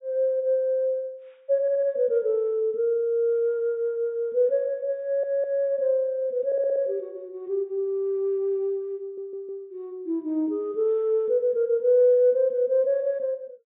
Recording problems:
treble cut off; nothing above 4 kHz
audio stuttering; 4 times, first at 1.5 s

